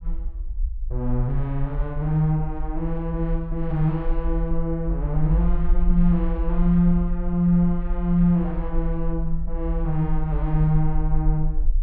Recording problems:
low-frequency rumble; below 44 Hz, SNR 5 dB

